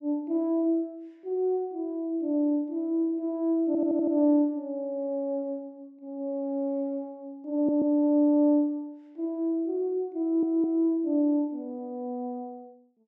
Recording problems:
stutter; at 3.5 s, at 7.5 s and at 10 s

